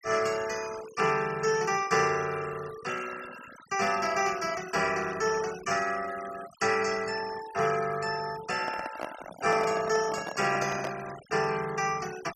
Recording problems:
noise reduction artefacts; signal-to-artefact ratio 15 dB
microphone handling noise; from 8.5 to 11 s; peak -2 dB vs average level

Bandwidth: 14 kHz